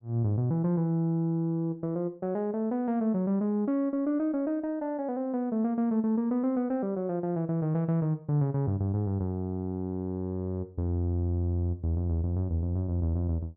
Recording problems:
none

